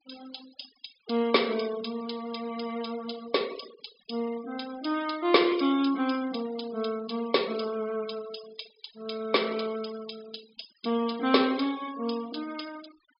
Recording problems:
treble cut off; nothing above 5.5 kHz
denoising artefacts; signal-to-artefact ratio 17 dB

